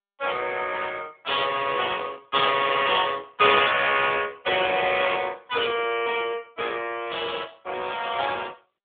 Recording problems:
phone line; 300 Hz to 3.6 kHz, AMR-NB

